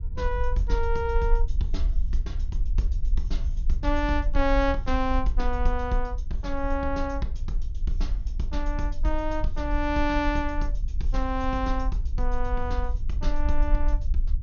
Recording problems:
treble cut off; nothing above 6.7 kHz
rumble; below 46 Hz, SNR 0 dB

